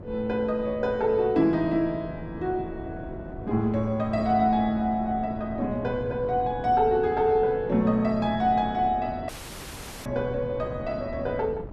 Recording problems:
wind on the microphone; below 370 Hz, SNR 14 dB
dropout; at 9.5 s for 1 s

